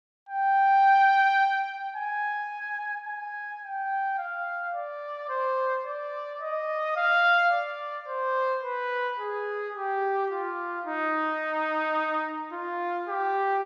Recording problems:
none

